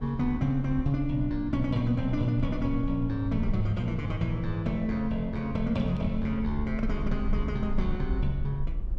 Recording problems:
rumble; below 50 Hz, strongest tone 18 Hz, SNR 9 dB

